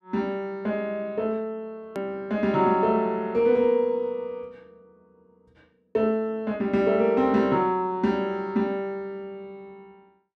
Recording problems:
edit click; at 2 s

